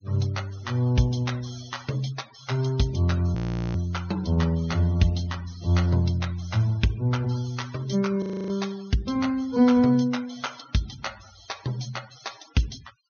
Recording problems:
low-pass filter; nothing above 6.5 kHz
denoising artefacts; signal-to-artefact ratio 21 dB
audio freezing; at 3.5 s and at 8 s

